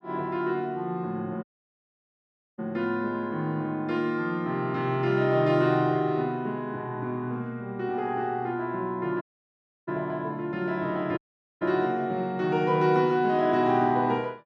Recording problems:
audio cutting out; at 1.5 s for 1 s, at 9 s for 0.5 s and at 11 s

